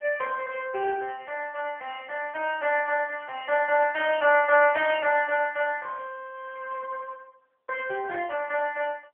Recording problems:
phone line; 320 Hz to 2.9 kHz, AMR-NB

